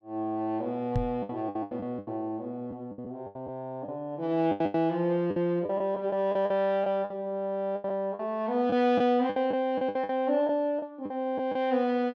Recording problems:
packet loss; 12% of the sound replaced, filled with the last packet
microphone thump; at 1 s; peak +3 dB vs average level

